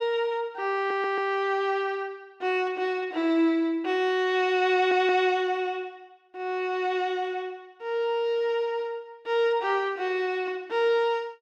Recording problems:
stutter; at 1 s and at 4.5 s

